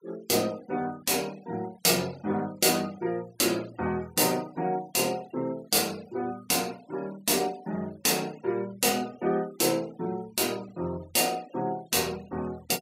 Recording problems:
noise reduction artefacts; signal-to-artefact ratio 24 dB

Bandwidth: 15.5 kHz